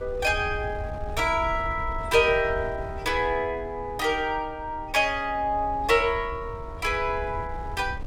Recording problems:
wind on the microphone; below 100 Hz, SNR 13 dB

